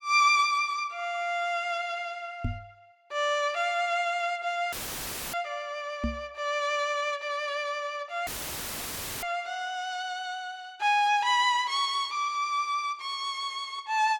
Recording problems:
microphone thump; at 2.5 s and at 6 s; peak +1 dB vs average level
audio cutting out; at 4.5 s for 0.5 s and at 8.5 s for 1 s; filled with static

